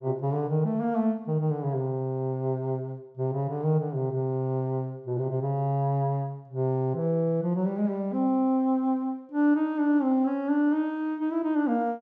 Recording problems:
none

